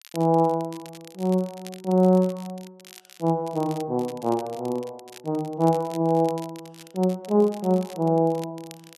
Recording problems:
crackle; vinyl, SNR 23 dB

